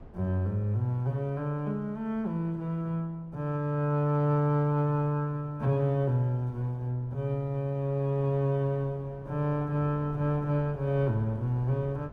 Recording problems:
wind noise; below 410 Hz, SNR 22 dB

